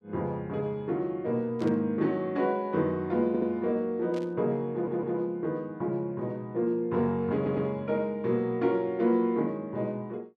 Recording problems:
static burst; at 1.5 s and at 4 s; peak -13 dB vs average level
stutter; at 3.5 s, at 4.5 s and at 7.5 s

